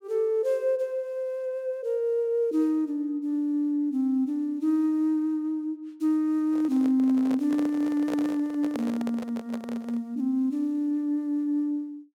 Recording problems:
handling noise; from 6.5 to 10 s; peak -3 dB vs average level

